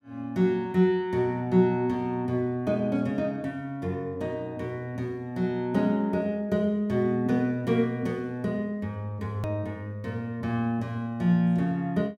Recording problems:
hard cut with a click; at 9.5 s

